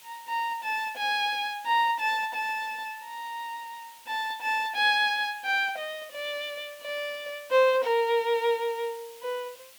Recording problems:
hiss; SNR 21 dB

